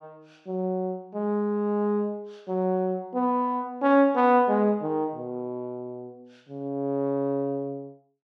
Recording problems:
none

